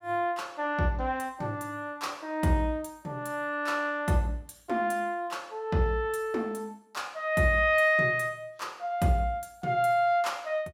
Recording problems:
none

